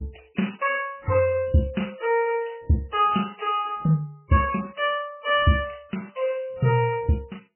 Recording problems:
lossy compression; MP3, log-spectral distance 5 dB, nothing above 2.9 kHz

